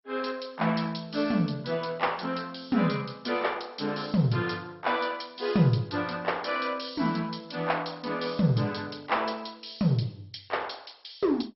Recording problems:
lossy codec; MP2, log-spectral distance 8 dB, nothing above 5.5 kHz

